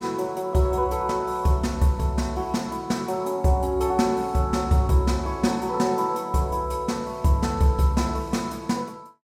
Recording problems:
none

